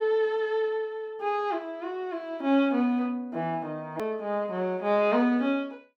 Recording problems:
hard cut with a click; at 4 s

